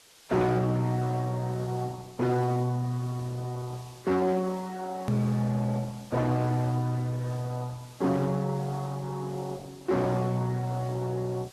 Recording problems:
codec artefacts; Vorbis, then Opus, log-spectral distance 2 dB, nothing above 13.1 kHz
distortion; hard clipping, signal-to-distortion ratio 10 dB
hiss; slope 0 dB per octave, SNR 23 dB
edit click; at 5 s

